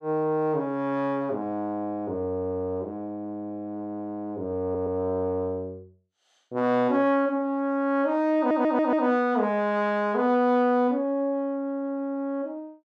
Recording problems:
stutter; at 4.5 s and at 8.5 s

